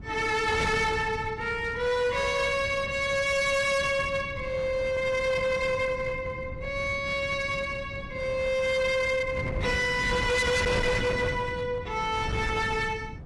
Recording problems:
lossy compression; AAC, log-spectral distance 2 dB, nothing above 11 kHz
distorted audio; hard clipping, uneven, signal-to-distortion ratio 7 dB
wind on the microphone; below 410 Hz, SNR 10 dB

